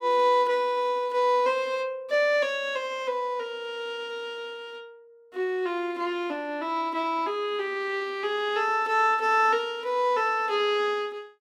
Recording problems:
none

